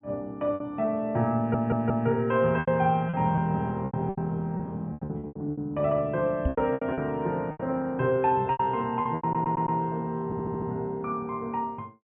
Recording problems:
low-pass filter; nothing above 3.3 kHz
lost packets; 11% of the sound replaced, filled with repeated pitch periods
audio stuttering; at 1.5 s, at 9 s and at 10 s
microphone bump; at 6.5 s; peak +4 dB vs average level

